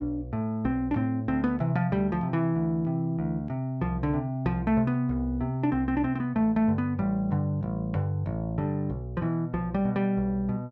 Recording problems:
none

